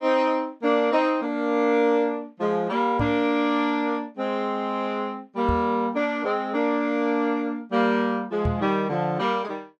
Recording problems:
microphone thump; at 3 s, at 5.5 s and at 8.5 s; peak +1 dB vs average level

